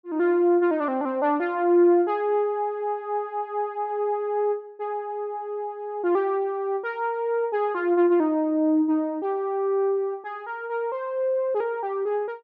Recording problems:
none

